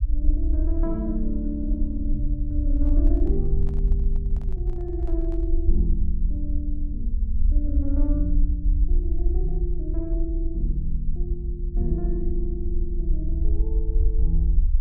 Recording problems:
rumble; below 54 Hz, SNR -6 dB
microphone handling noise; from 2.5 to 5.5 s; peak -12 dB vs average level

